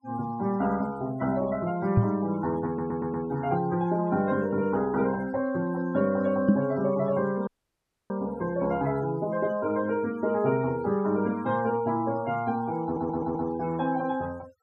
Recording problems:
noise reduction artefacts; signal-to-artefact ratio 20 dB
knock on the microphone; at 2 s and at 6.5 s; peak +10 dB vs average level
audio stuttering; at 2.5 s and at 13 s
audio cutting out; at 7.5 s for 0.5 s

